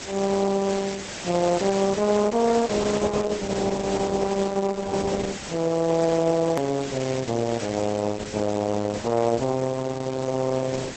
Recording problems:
lossy compression; Opus, log-spectral distance 9 dB, nothing above 13.1 kHz
background hiss; slope -2 dB per octave, SNR 11 dB
click at an edit; at 6.5 s

